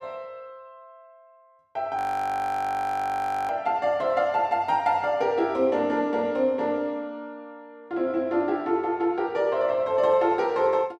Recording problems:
frozen audio; at 2 s for 1.5 s

